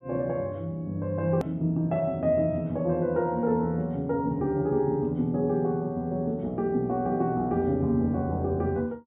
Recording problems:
treble cut off; nothing above 4 kHz
click at an edit; at 1.5 s

